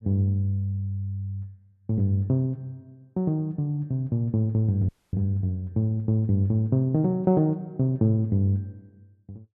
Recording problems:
dropout; at 5 s

